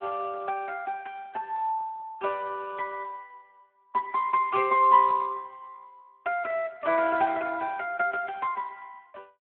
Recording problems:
phone line; 240 Hz to 3.1 kHz, Speex

